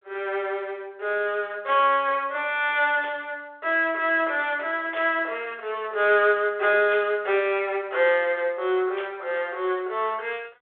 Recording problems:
telephone audio; 340 Hz to 3.6 kHz, G.726
static burst; 4 times, first at 3 s; peak -9 dB vs average level

